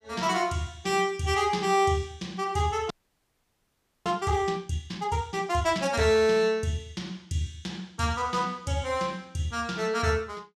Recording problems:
frozen audio; at 3 s for 1 s

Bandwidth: 15 kHz